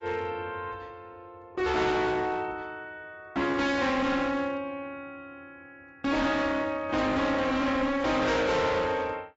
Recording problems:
codec artefacts; AAC, log-spectral distance 2 dB, nothing above 7.6 kHz
distorted audio; hard clipping, signal-to-distortion ratio 6 dB

